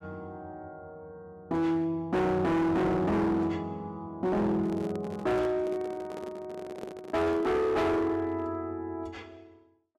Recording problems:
distorted audio; hard clipping, signal-to-distortion ratio 7 dB
handling noise; from 4.5 to 7.5 s; peak -6 dB vs average level

